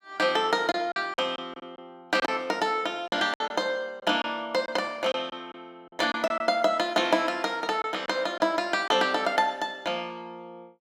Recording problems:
packet loss; 6% of the sound replaced, filled with silence

